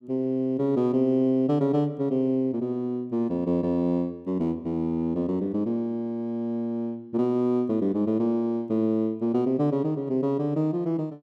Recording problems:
none

